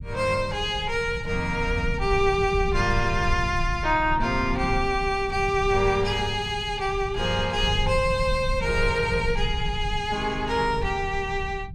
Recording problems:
rumble; below 110 Hz, SNR 8 dB

